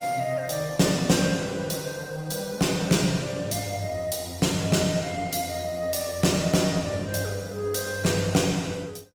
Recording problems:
lossy codec; Opus, log-spectral distance 5 dB, nothing above 17 kHz

